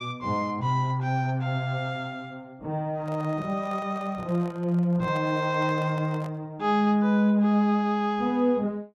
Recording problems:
handling noise; from 3 to 6.5 s; peak -10 dB vs average level

